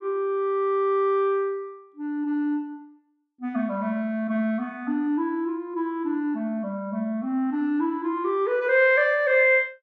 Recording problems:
none

